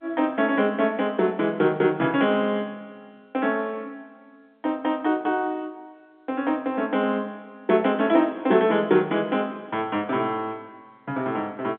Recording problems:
phone line; 170 Hz to 3.5 kHz, G.711

